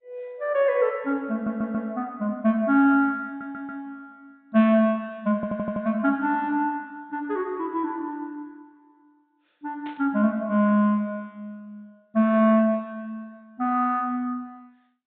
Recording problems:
treble missing; nothing above 4 kHz
codec artefacts; MP2, log-spectral distance 2 dB
audio stuttering; at 1.5 s, at 3.5 s and at 5.5 s
burst of static; at 10 s; peak -15 dB vs average level

